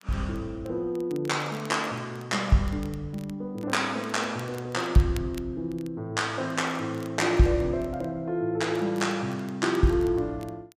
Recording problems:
crackling; vinyl, SNR 24 dB

